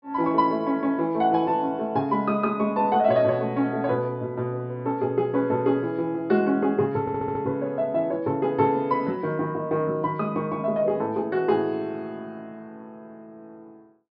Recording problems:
treble cut off; nothing above 5.5 kHz
stutter; at 7 s

